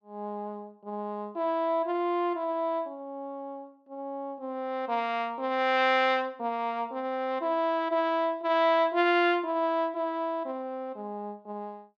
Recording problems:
none

